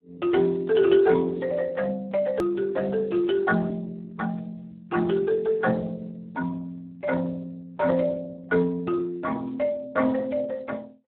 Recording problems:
phone line; 190 Hz to 2.7 kHz, Speex
click at an edit; at 2.5 s

